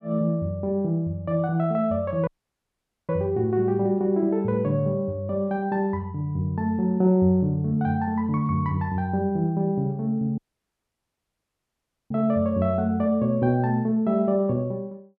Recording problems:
audio cutting out; at 2.5 s for 1 s and at 10 s for 1.5 s

